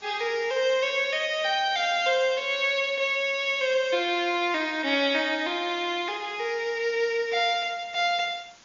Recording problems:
treble cut off; nothing above 7.1 kHz
hiss; slope -1 dB per octave, SNR 27 dB

